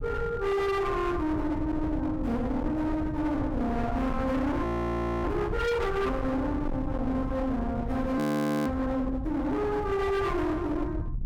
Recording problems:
distorted audio; hard clipping, uneven, signal-to-distortion ratio 7 dB
rumble; below 230 Hz, SNR 7 dB
frozen audio; at 4.5 s for 0.5 s and at 8 s

